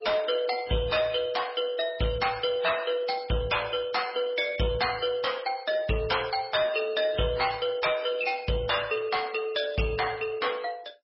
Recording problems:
lossy codec; MP2, then MP3, log-spectral distance 5 dB, nothing above 5 kHz
distortion; soft clipping, signal-to-distortion ratio 12 dB

